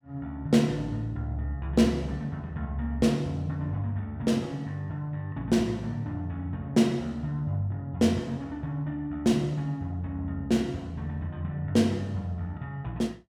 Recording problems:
none

